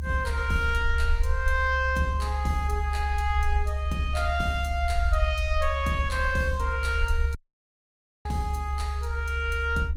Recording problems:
codec artefacts; Opus, log-spectral distance 2 dB, nothing above 20.1 kHz
rumble; below 72 Hz, strongest tone 70 Hz, SNR 1 dB
dropout; at 7.5 s for 1 s

